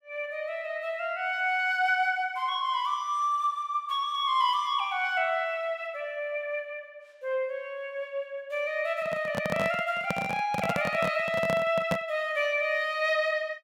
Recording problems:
handling noise; from 9 to 12 s; peak +3 dB vs average level

